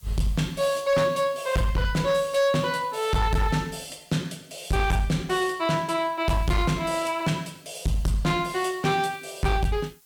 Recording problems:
distortion; hard clipping, signal-to-distortion ratio 10 dB
hiss; SNR 29 dB

